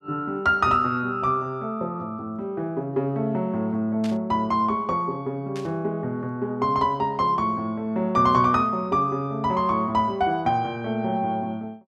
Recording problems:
burst of static; at 4 s and at 5.5 s; peak -10 dB vs average level

